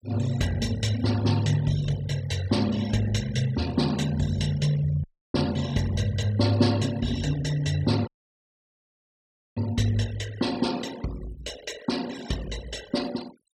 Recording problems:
denoising artefacts; signal-to-artefact ratio 16 dB
audio cutting out; at 5 s and at 8 s for 1.5 s

